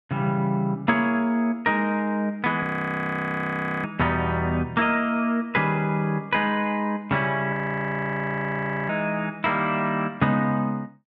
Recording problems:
audio freezing; at 2.5 s for 1 s and at 7.5 s for 1.5 s

